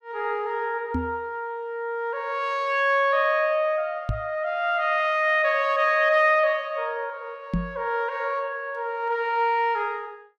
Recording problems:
microphone thump; at 1 s, at 4 s and at 7.5 s; peak +2 dB vs average level

